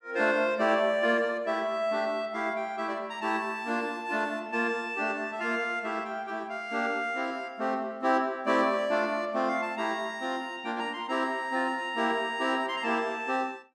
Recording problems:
none

